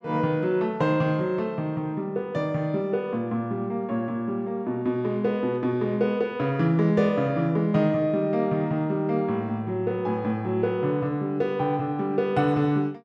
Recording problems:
none

